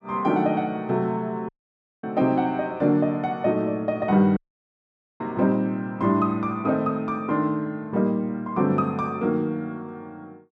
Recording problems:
audio cutting out; at 1.5 s for 0.5 s and at 4.5 s for 1 s

